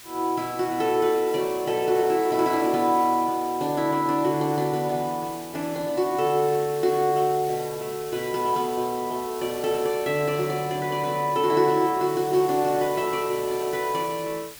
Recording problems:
background hiss; slope +2 dB per octave, SNR 16 dB

